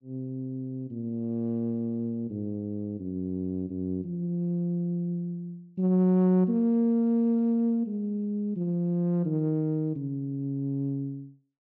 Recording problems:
treble missing; nothing above 8 kHz

